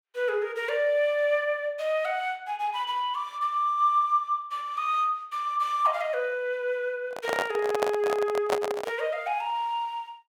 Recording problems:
microphone handling noise; from 7 to 9 s; peak +4 dB vs average level

